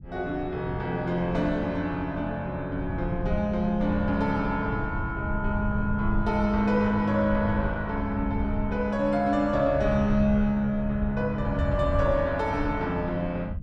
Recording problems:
rumble; below 96 Hz, SNR 9 dB

